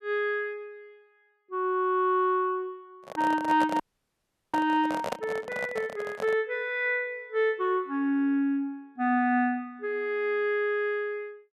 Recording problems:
handling noise; from 3 to 6.5 s; peak 0 dB vs average level
audio freezing; at 4 s for 0.5 s

